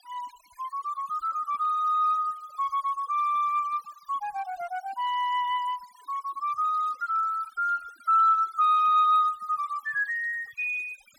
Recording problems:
noise reduction artefacts; signal-to-artefact ratio 25 dB

